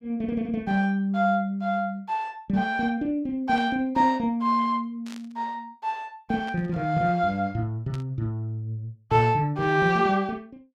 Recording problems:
burst of static; 4 times, first at 3.5 s; peak -13 dB vs average level

